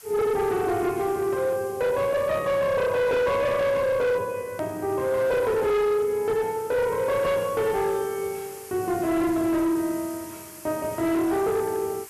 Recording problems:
distortion; hard clipping, signal-to-distortion ratio 10 dB
hiss; SNR 19 dB
click at an edit; at 4.5 s

